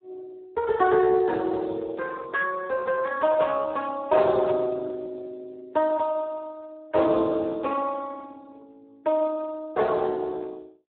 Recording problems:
telephone audio; 280 Hz to 2.8 kHz, Speex
burst of static; at 4.5 s; peak -19 dB vs average level

